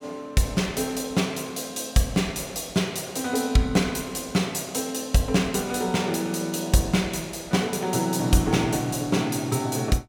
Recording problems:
none

